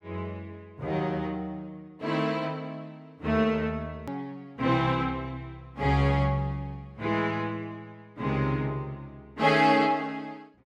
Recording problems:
edit click; at 4 s

